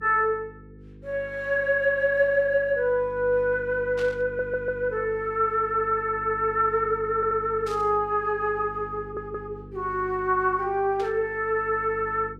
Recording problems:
hum; 50 Hz, harmonics up to 500 Hz, SNR 19 dB
static burst; at 4 s, at 7.5 s and at 11 s; peak -11 dB vs average level
stutter; at 4.5 s, at 7 s and at 9 s

